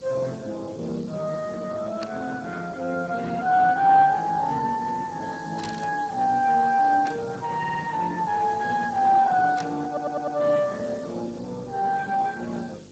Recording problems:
lossy codec; Speex, log-spectral distance 5 dB
hum; 50 Hz, harmonics up to 600 Hz, SNR 23 dB
hiss; slope 0 dB per octave, SNR 27 dB
burst of static; 4 times, first at 2 s; peak -7 dB vs average level
stutter; at 7.5 s and at 10 s

